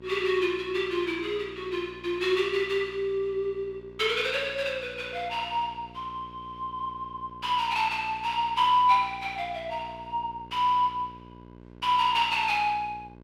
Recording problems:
hum; 60 Hz, harmonics up to 1.6 kHz, SNR 21 dB

